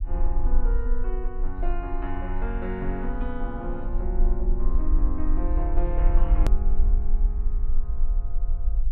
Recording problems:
low-frequency rumble; below 38 Hz, strongest tone 18 Hz, SNR -6 dB
click at an edit; at 6.5 s

